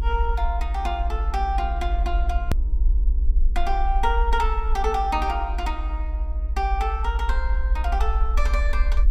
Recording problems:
hum; 60 Hz, harmonics up to 480 Hz, SNR 19 dB
low-frequency rumble; below 58 Hz, SNR -2 dB
edit click; at 2.5 s

